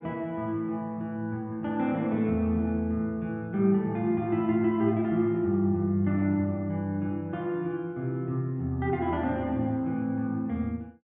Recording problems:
none

